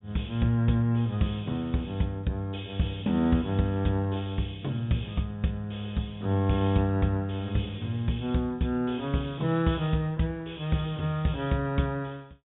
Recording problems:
low-pass filter; nothing above 4 kHz

